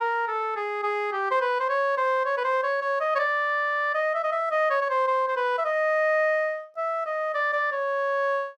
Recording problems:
none

